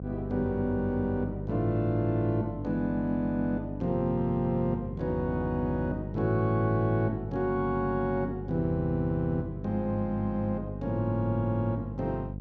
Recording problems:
mains hum; 50 Hz, harmonics up to 550 Hz, SNR 8 dB

